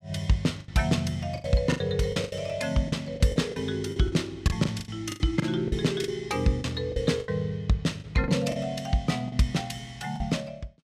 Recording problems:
lost packets; 12% of the sound replaced, filled with the last packet

